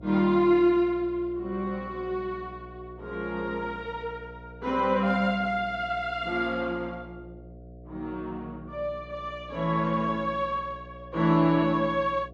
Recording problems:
electrical hum; 60 Hz, harmonics up to 720 Hz, SNR 19 dB

